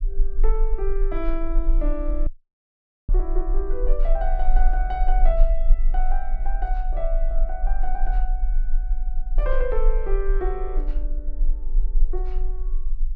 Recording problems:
rumble; below 34 Hz, strongest tone 20 Hz, SNR -6 dB
audio cutting out; at 2.5 s for 1 s

